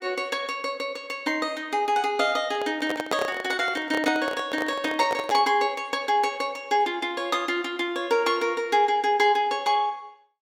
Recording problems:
handling noise; from 2.5 to 5.5 s; peak 0 dB vs average level

